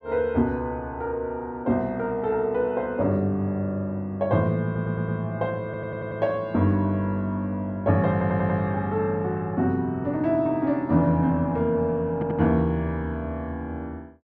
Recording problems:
stutter; 4 times, first at 4.5 s

